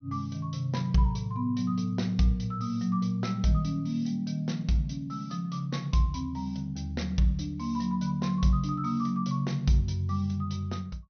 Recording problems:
low-pass filter; nothing above 6.3 kHz

